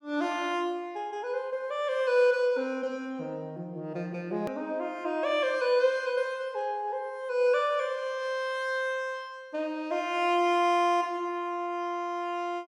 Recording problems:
click at an edit; at 4.5 s

